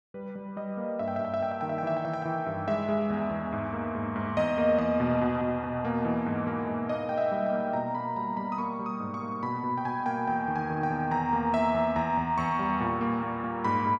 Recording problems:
none

